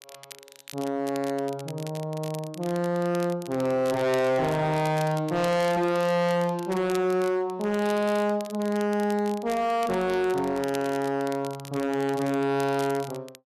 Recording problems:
distortion; hard clipping, signal-to-distortion ratio 6 dB
crackling; vinyl, SNR 19 dB

